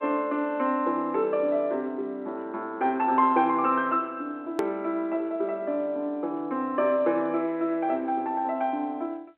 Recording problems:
phone line; 220 Hz to 3.2 kHz, G.711
edit click; at 4.5 s

